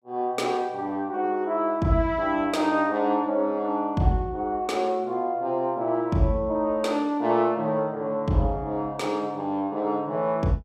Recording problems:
none

